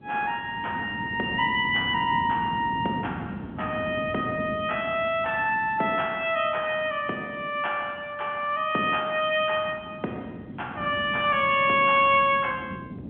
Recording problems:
phone line; 170 Hz to 3.4 kHz, G.711
wind noise; below 300 Hz, SNR 14 dB

